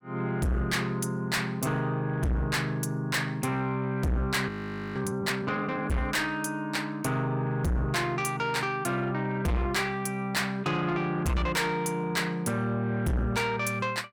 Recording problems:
distortion; soft clipping, signal-to-distortion ratio 6 dB
frozen audio; at 4.5 s

